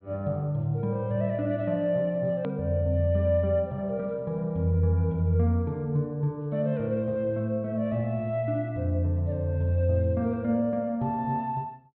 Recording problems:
treble cut off; nothing above 4 kHz
hard cut with a click; at 2.5 s

